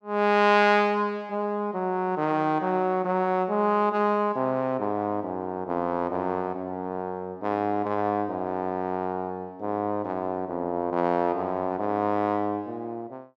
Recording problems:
none

